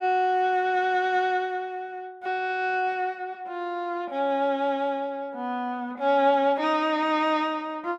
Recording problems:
none

